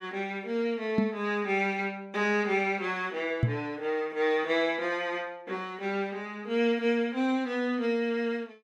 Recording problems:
microphone thump; at 1 s and at 3.5 s; peak +7 dB vs average level

